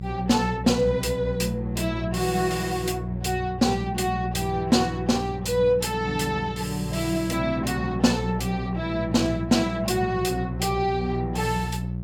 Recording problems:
hum; 60 Hz, harmonics up to 540 Hz, SNR 7 dB

